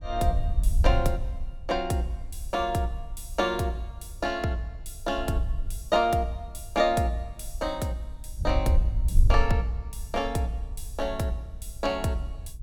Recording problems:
wind noise; below 64 Hz, SNR 3 dB

